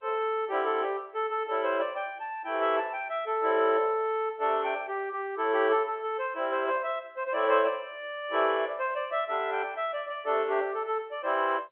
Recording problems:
phone line; 300 Hz to 3.5 kHz, G.711

